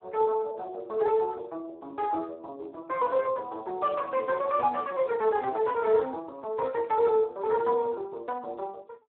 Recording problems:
telephone audio; 280 Hz to 3.7 kHz, Speex

